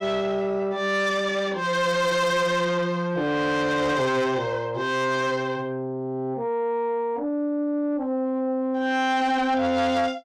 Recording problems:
distorted audio; soft clipping, signal-to-distortion ratio 11 dB

